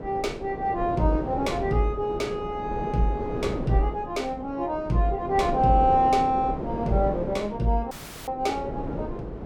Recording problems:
wind noise; below 490 Hz, SNR 8 dB
audio cutting out; at 8 s

